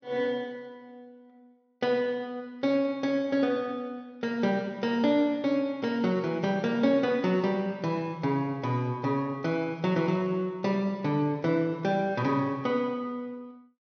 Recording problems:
low-pass filter; nothing above 6.2 kHz

